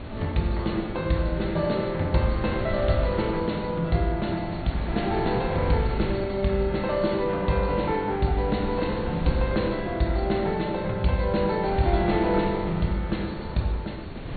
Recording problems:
low-pass filter; nothing above 4.5 kHz
mains hum; 50 Hz, harmonics up to 1.1 kHz, SNR 25 dB
wind noise; below 330 Hz, SNR 10 dB

